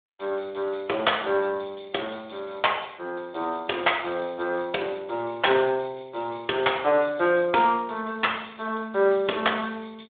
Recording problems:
telephone audio; 300 Hz to 3.6 kHz, Speex

